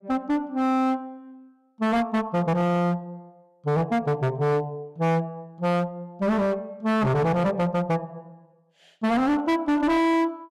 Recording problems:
distorted audio; hard clipping, signal-to-distortion ratio 7 dB

